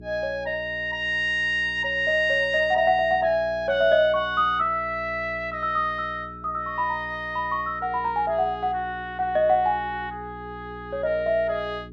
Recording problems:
electrical hum; 60 Hz, harmonics up to 420 Hz, SNR 20 dB

